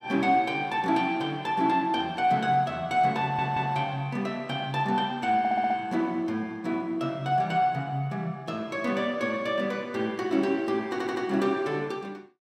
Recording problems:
audio stuttering; at 3 s, at 5.5 s and at 11 s

